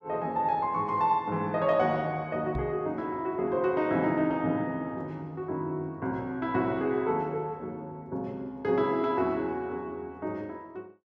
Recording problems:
microphone thump; at 2.5 s; peak -2 dB vs average level

